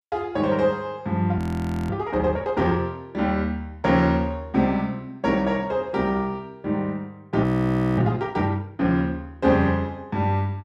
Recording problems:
frozen audio; at 1.5 s for 0.5 s and at 7.5 s for 0.5 s

